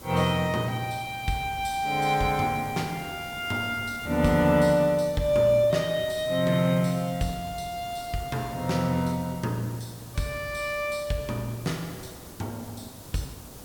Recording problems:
hiss; SNR 17 dB

